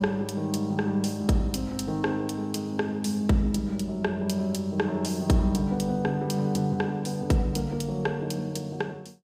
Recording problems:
none

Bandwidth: 15.5 kHz